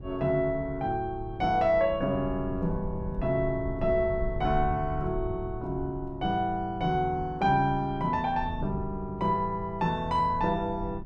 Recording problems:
low-frequency rumble; below 110 Hz, SNR 12 dB

